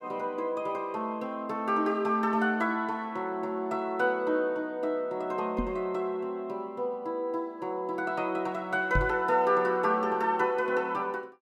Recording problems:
microphone thump; at 5.5 s and at 9 s; peak +3 dB vs average level

